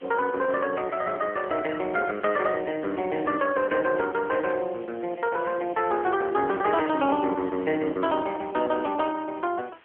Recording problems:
phone line; 220 Hz to 3.1 kHz, AMR-NB
hiss; SNR 27 dB

